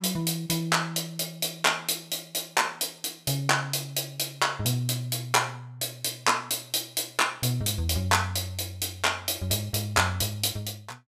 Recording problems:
none

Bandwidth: 15 kHz